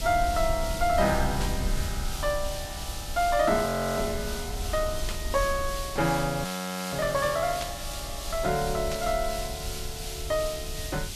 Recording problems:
hiss; slope +3 dB per octave, SNR 8 dB
rumble; below 68 Hz, SNR 9 dB
burst of static; 4 times, first at 1.5 s; peak -3 dB vs average level
audio freezing; at 3.5 s and at 6.5 s

